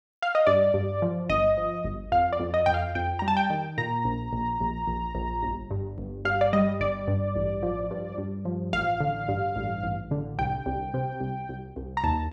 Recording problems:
none

